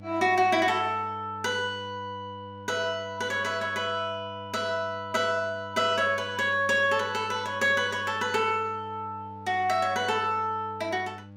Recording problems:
hum; 50 Hz, harmonics up to 1.1 kHz, SNR 19 dB

